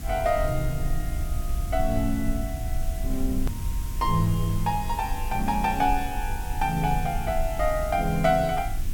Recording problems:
hum; 50 Hz, harmonics up to 350 Hz, SNR 20 dB
background hiss; SNR 15 dB
low-frequency rumble; below 58 Hz, SNR 6 dB
hard cut with a click; at 3.5 s

